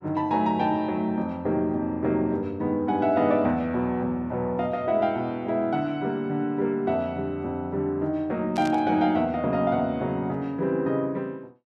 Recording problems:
static burst; at 8.5 s; peak -9 dB vs average level

